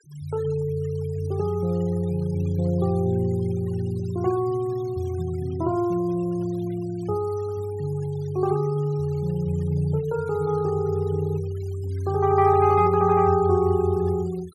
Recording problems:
denoising artefacts; signal-to-artefact ratio 25 dB

